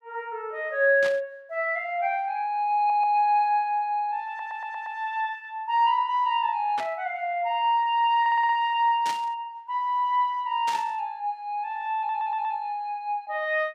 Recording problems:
static burst; 4 times, first at 1 s; peak -5 dB vs average level
audio stuttering; 4 times, first at 3 s

